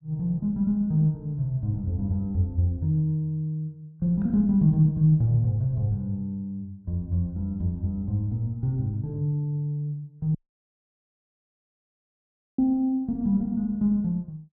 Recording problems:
audio cutting out; at 10 s for 2 s

